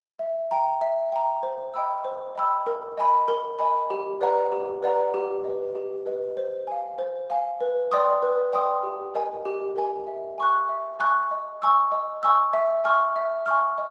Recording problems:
lossy compression; Opus, then Opus, log-spectral distance 2 dB

